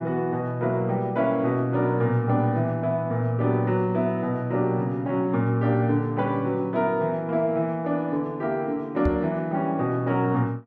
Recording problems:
microphone bump; at 9 s; peak +2 dB vs average level

